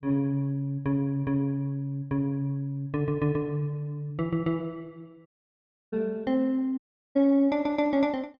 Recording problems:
dropout; at 5.5 s for 0.5 s and at 7 s

